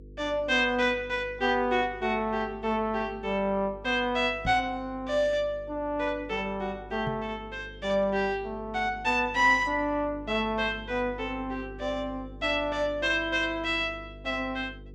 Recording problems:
hum; 50 Hz, harmonics up to 500 Hz, SNR 19 dB
knock on the microphone; at 4.5 s and at 7 s; peak -3 dB vs average level

